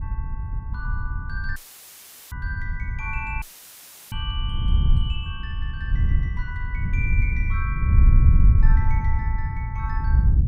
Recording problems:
wind noise; below 86 Hz, SNR -11 dB
audio cutting out; at 1.5 s for 1 s and at 3.5 s for 0.5 s; filled with static

